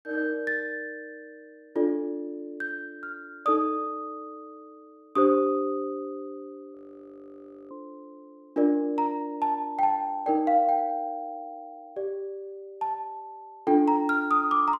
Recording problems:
audio freezing; at 7 s for 1 s

